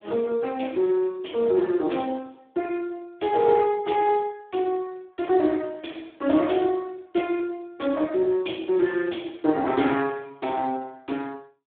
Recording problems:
phone line; 220 Hz to 3.4 kHz, Speex

